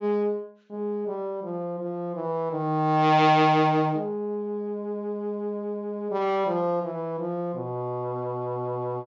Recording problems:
low-pass filter; nothing above 7.5 kHz

